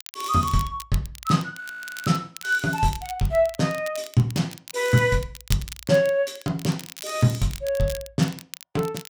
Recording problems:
crackling; vinyl, SNR 16 dB
frozen audio; at 1.5 s

